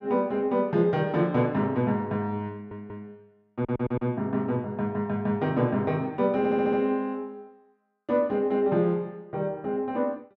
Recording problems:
stutter; at 2.5 s, at 3.5 s and at 6.5 s

